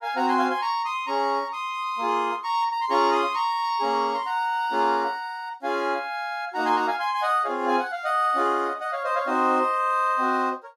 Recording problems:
none

